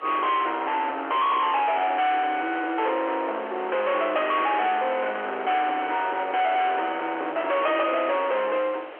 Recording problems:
telephone audio; 650 Hz to 3.4 kHz, G.711
distorted audio; soft clipping, signal-to-distortion ratio 6 dB
hiss; SNR 16 dB

